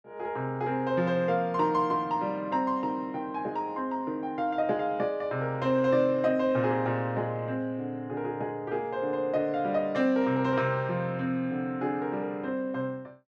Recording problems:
none

